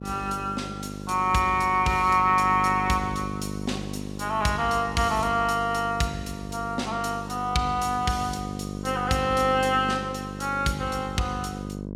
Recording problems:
hum; 50 Hz, harmonics up to 650 Hz, SNR 10 dB

